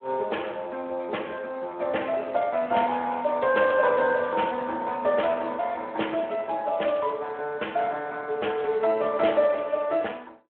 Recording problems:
phone line; 320 Hz to 3.3 kHz, Speex

